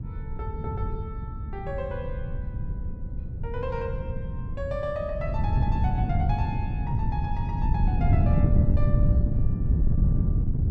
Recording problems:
wind on the microphone; below 130 Hz, SNR -8 dB

